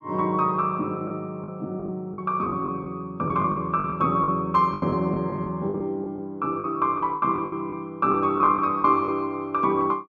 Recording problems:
packet loss; 10% of the sound replaced, filled with the last packet

